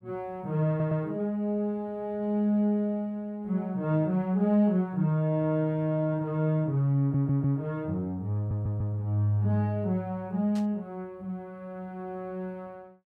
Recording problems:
stutter; at 0.5 s, at 7 s and at 8.5 s
static burst; at 11 s; peak -14 dB vs average level

